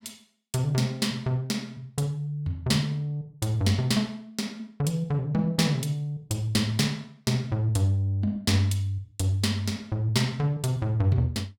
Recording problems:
none

